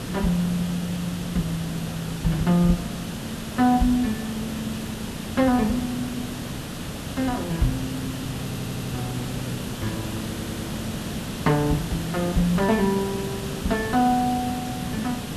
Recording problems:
hiss; slope -4 dB per octave, SNR 6 dB
audio stuttering; at 8.5 s and at 10 s

